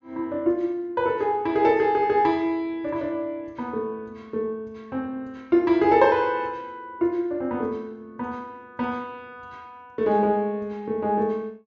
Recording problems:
treble missing; nothing above 8 kHz

